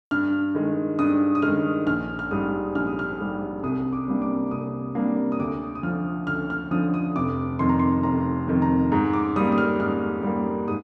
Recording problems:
none

